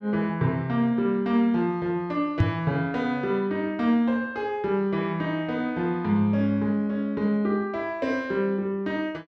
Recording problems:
microphone bump; at 2.5 s; peak +7 dB vs average level

